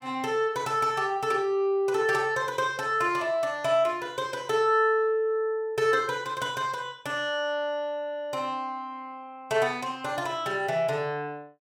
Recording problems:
none

